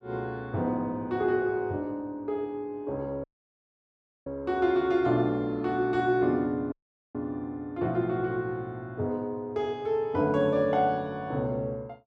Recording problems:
dropout; at 3 s for 1 s and at 6.5 s

